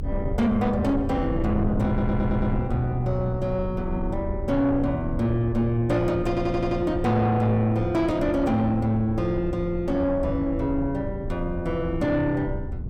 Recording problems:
distorted audio; soft clipping, signal-to-distortion ratio 11 dB
electrical hum; 60 Hz, harmonics up to 480 Hz, SNR 22 dB
low-frequency rumble; below 100 Hz, strongest tone 28 Hz, SNR 9 dB
wind on the microphone; below 260 Hz, SNR 13 dB
stutter; at 2 s and at 6.5 s

